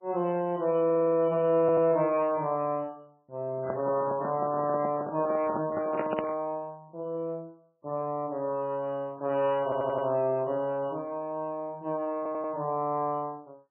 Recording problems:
lossy codec; MP3, then MP3, log-spectral distance 2 dB, nothing above 2.7 kHz
stutter; 4 times, first at 1 s
microphone handling noise; from 3.5 to 6.5 s; peak -2 dB vs average level

